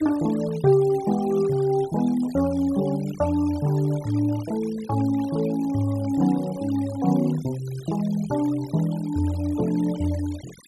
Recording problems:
noise reduction artefacts; signal-to-artefact ratio 21 dB

